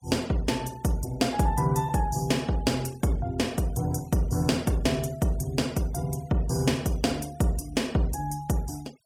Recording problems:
denoising artefacts; signal-to-artefact ratio 23 dB

